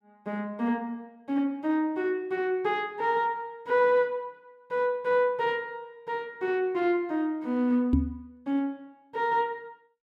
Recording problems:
microphone thump; at 8 s; peak +7 dB vs average level

